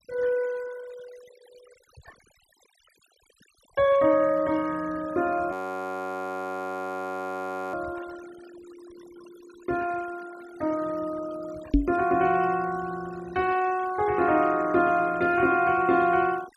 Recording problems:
noise reduction artefacts; signal-to-artefact ratio 21 dB
audio freezing; at 5.5 s for 2 s
microphone thump; at 12 s; peak +8 dB vs average level

